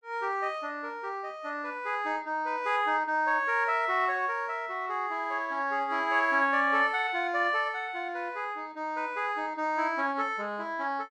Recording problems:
none

